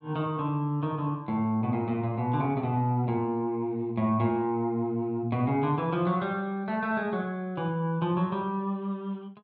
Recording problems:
none

